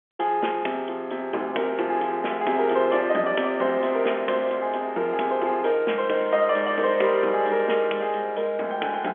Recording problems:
telephone audio; 260 Hz to 3.4 kHz, G.711

